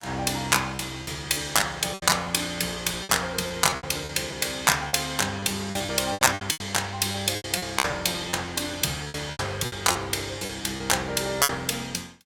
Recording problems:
lost packets; 13% of the sound replaced, filled with repeated pitch periods

